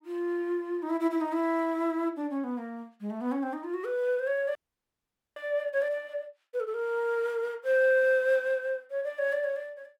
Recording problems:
audio freezing; at 4.5 s for 1 s

